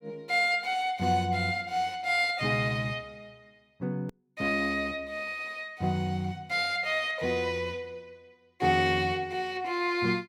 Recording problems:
click at an edit; at 4 s

